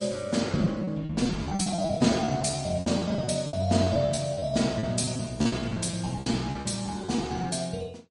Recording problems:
lossy codec; MP3, log-spectral distance 4 dB, nothing above 10.4 kHz
packet loss; 18% of the sound replaced, filled with repeated pitch periods

